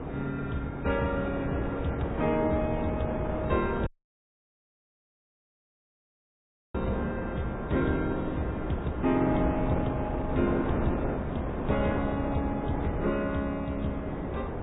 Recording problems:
treble missing; nothing above 3.6 kHz
lossy compression; MP3, log-spectral distance 2 dB
wind noise; below 580 Hz, SNR 3 dB
dropout; at 4 s for 3 s

